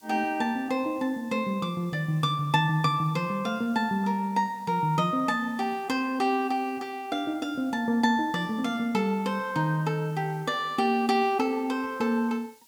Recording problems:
hiss; SNR 29 dB

